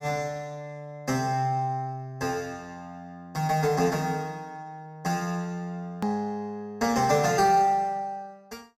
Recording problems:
click at an edit; at 6 s

